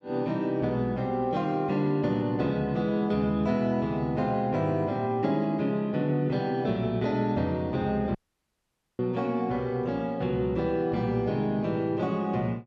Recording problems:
audio cutting out; at 8 s for 1 s

